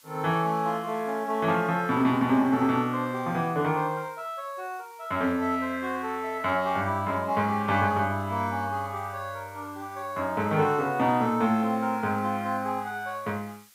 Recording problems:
hiss; slope +3 dB per octave, SNR 27 dB

